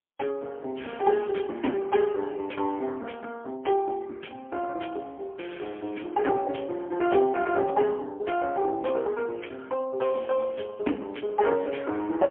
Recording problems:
telephone audio; 240 Hz to 3 kHz, AMR-NB, then MP3

